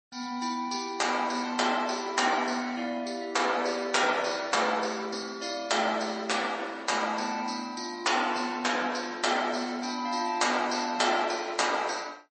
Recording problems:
codec artefacts; MP3, log-spectral distance 6 dB, nothing above 8.2 kHz

